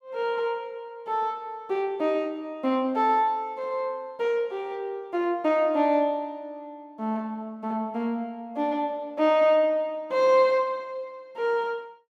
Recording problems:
none

